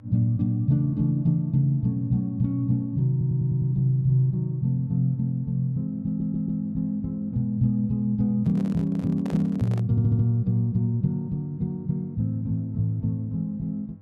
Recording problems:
mains hum; 50 Hz, harmonics up to 600 Hz, SNR 24 dB
audio stuttering; at 3 s, at 6 s and at 10 s
handling noise; from 8.5 to 10 s; peak -9 dB vs average level

